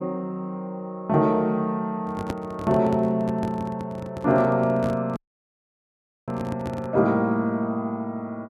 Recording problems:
microphone handling noise; from 2 to 7 s; peak -1 dB vs average level
dropout; at 5 s for 1 s

